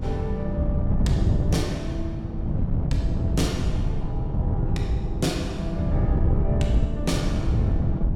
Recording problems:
hum; 50 Hz, harmonics up to 500 Hz, SNR 25 dB
wind on the microphone; below 140 Hz, SNR -4 dB

